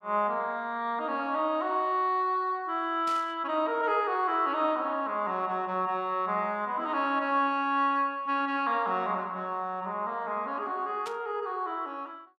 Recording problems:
burst of static; at 3 s and at 11 s; peak -10 dB vs average level

